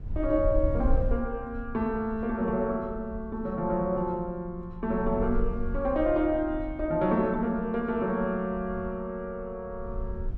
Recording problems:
rumble; below 66 Hz, SNR 8 dB

